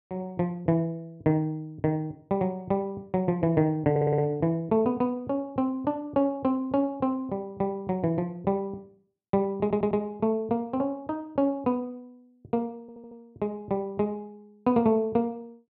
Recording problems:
stutter; at 4 s, at 9.5 s and at 13 s

